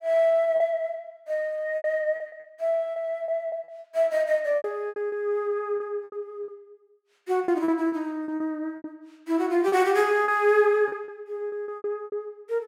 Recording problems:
lost packets; 13% of the sound replaced, filled with repeated pitch periods

